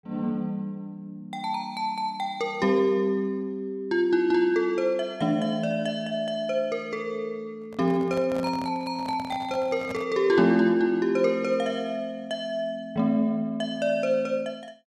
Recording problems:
handling noise; from 7.5 to 10 s; peak -7 dB vs average level

